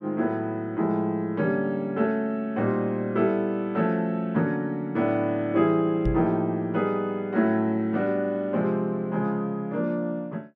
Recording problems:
knock on the microphone; at 6 s; peak +2 dB vs average level

